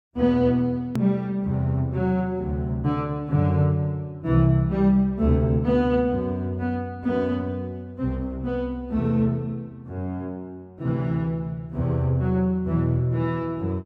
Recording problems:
hard cut with a click; at 1 s

